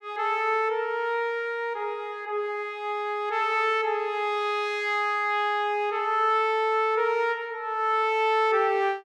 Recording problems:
none

